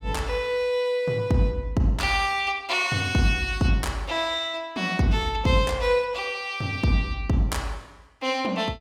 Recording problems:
none

